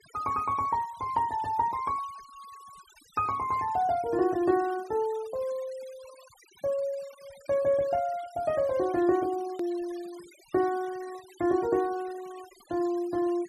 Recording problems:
noise reduction artefacts; signal-to-artefact ratio 21 dB
click at an edit; at 9.5 s

